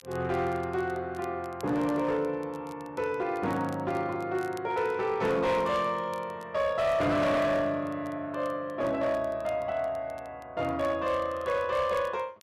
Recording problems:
distorted audio; hard clipping, signal-to-distortion ratio 12 dB
crackling; vinyl, SNR 28 dB

